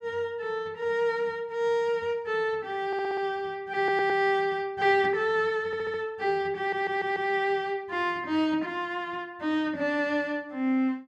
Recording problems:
stutter; 4 times, first at 3 s

